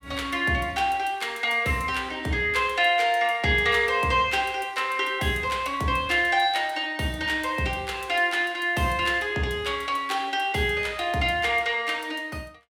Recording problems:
none

